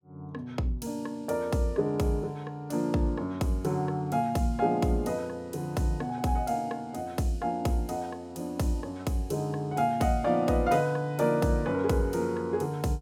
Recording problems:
none

